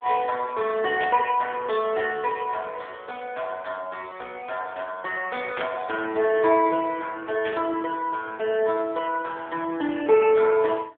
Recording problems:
phone line; 240 Hz to 3.4 kHz, AMR-NB
static burst; at 1 s, at 5.5 s and at 7.5 s; peak -3 dB vs average level

